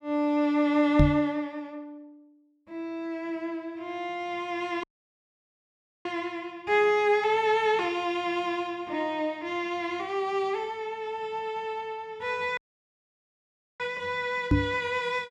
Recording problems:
microphone bump; at 1 s and at 15 s; peak +9 dB vs average level
audio cutting out; at 5 s for 1 s and at 13 s for 1 s

